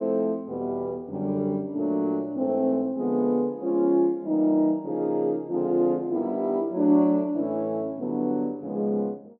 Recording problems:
treble cut off; nothing above 6.5 kHz

